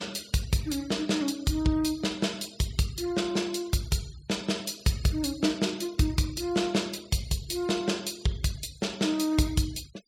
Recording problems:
denoising artefacts; signal-to-artefact ratio 21 dB

